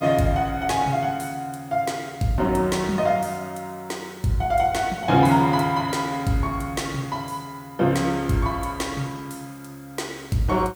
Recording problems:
hiss; slope +1 dB per octave, SNR 27 dB

